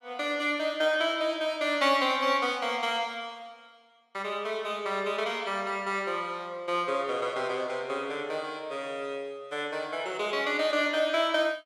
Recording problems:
none

